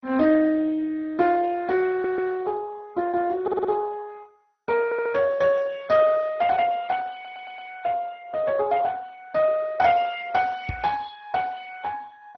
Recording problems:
codec artefacts; Speex, then MP2, log-spectral distance 3 dB, nothing above 6 kHz
audio stuttering; 4 times, first at 2 s
knock on the microphone; at 11 s; peak -2 dB vs average level

